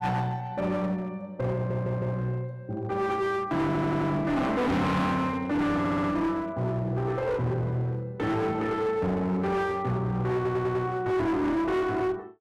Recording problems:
distortion; hard clipping, uneven, signal-to-distortion ratio 6 dB
audio stuttering; 4 times, first at 1.5 s

